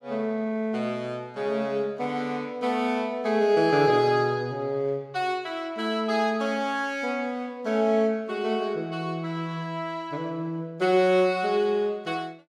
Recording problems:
none

